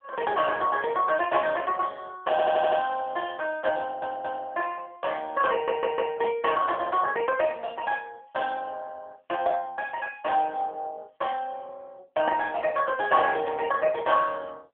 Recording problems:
phone line; 240 Hz to 3.3 kHz, AMR-NB
audio stuttering; at 2.5 s, at 4 s and at 5.5 s

